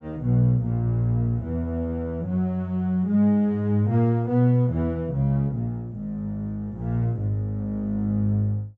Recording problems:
treble missing; nothing above 8 kHz

